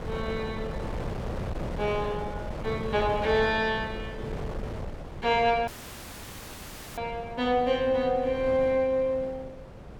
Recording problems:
wind noise; below 530 Hz, SNR 10 dB
dropout; at 5.5 s for 1.5 s

